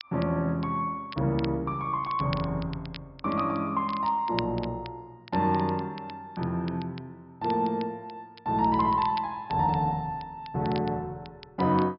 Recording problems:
treble cut off; nothing above 5.5 kHz
crackle; vinyl, SNR 19 dB

